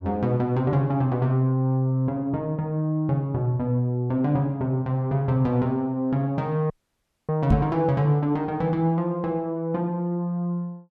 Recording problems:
dropout; at 6.5 s for 0.5 s
knock on the microphone; at 7.5 s; peak +6 dB vs average level

